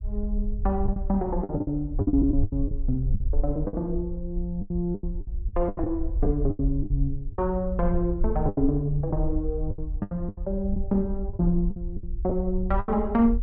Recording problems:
rumble; below 58 Hz, SNR 4 dB
lost packets; 12% of the sound replaced, filled with the last packet

